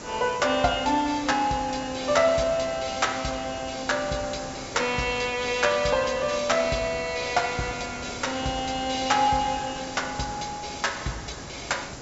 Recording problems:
treble missing; nothing above 8 kHz
hiss; SNR 13 dB

